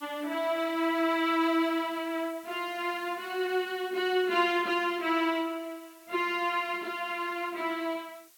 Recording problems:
background hiss; slope +4 dB per octave, SNR 24 dB

